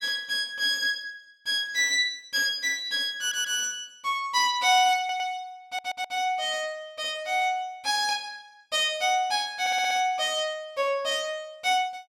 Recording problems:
audio stuttering; 4 times, first at 3 s

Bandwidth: 16 kHz